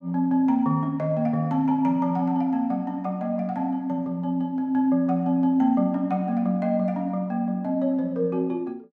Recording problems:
none

